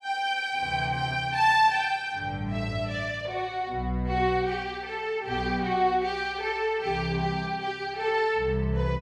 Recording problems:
none

